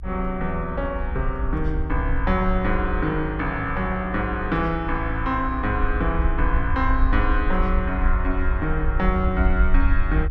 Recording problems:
low-frequency rumble; below 58 Hz, SNR 2 dB

